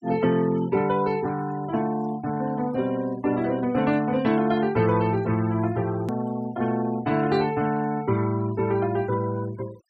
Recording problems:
denoising artefacts; signal-to-artefact ratio 20 dB
edit click; at 6 s

